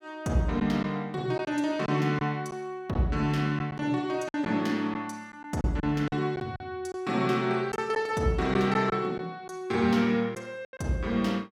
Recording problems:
packet loss; 5% of the sound replaced, filled with silence

